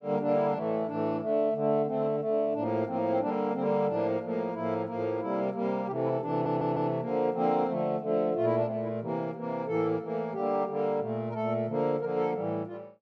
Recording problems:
stutter; at 6.5 s

